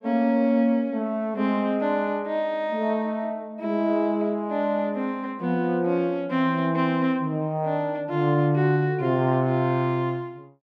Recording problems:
none

